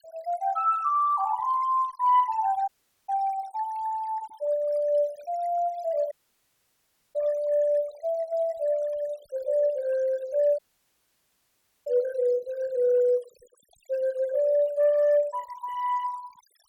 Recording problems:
noise reduction artefacts; signal-to-artefact ratio 24 dB
dropout; at 2.5 s, at 6 s for 1 s and at 11 s for 1.5 s

